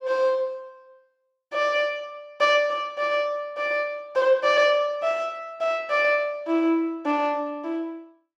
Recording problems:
none

